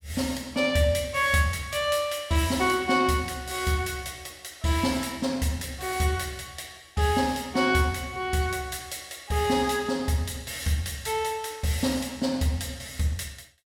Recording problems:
none

